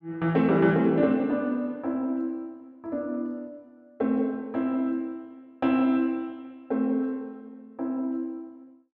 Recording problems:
none

